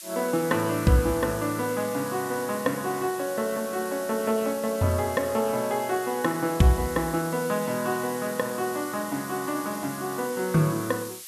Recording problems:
background hiss; slope +6 dB per octave, SNR 12 dB

